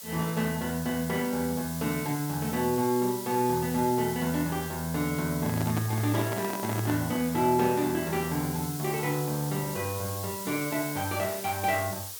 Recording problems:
hiss; SNR 9 dB
handling noise; from 5.5 to 7 s; peak -1 dB vs average level

